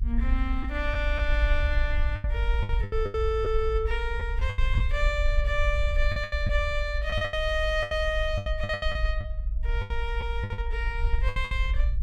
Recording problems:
rumble; below 56 Hz, SNR 0 dB
lost packets; 12% of the sound replaced, filled with the last packet

